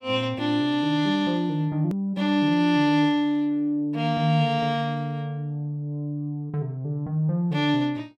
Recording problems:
edit click; at 2 s

